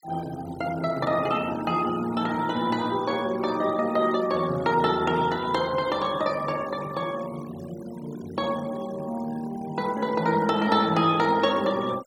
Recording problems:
denoising artefacts; signal-to-artefact ratio 19 dB

